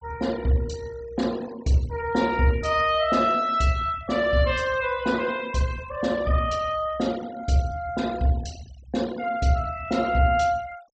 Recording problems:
treble missing; nothing above 8 kHz
noise reduction artefacts; signal-to-artefact ratio 20 dB

